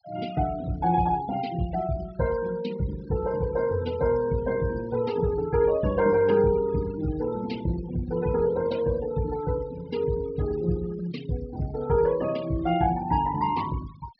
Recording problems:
low-pass filter; nothing above 5.5 kHz
denoising artefacts; signal-to-artefact ratio 19 dB

